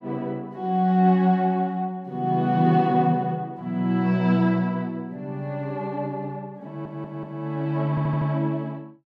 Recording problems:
audio stuttering; at 6.5 s and at 8 s

